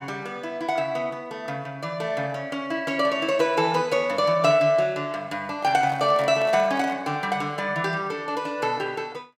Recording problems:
microphone handling noise; from 5.5 to 7 s; peak -7 dB vs average level

